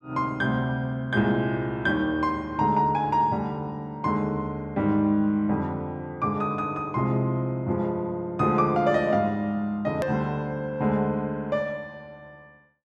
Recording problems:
click at an edit; at 10 s

